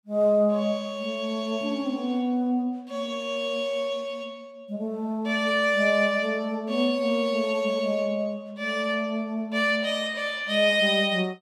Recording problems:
none

